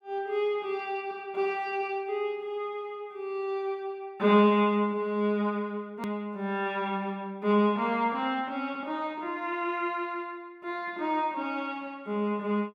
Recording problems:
edit click; at 6 s

